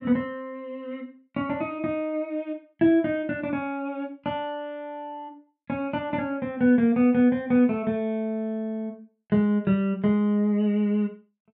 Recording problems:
none

